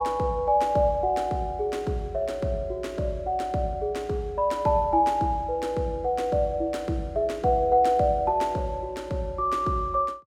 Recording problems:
none

